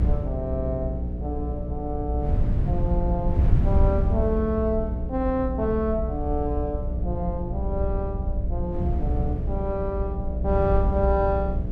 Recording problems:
hum; 60 Hz, harmonics up to 660 Hz, SNR 3 dB
low-frequency rumble; below 78 Hz, SNR 6 dB
wind on the microphone; below 110 Hz, SNR 1 dB

